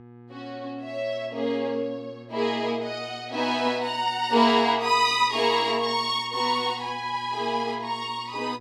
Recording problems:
mains hum; 60 Hz, harmonics up to 1.7 kHz, SNR 22 dB

